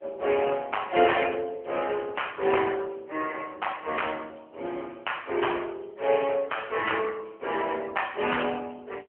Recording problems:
telephone audio; 300 Hz to 3.1 kHz, AMR-NB

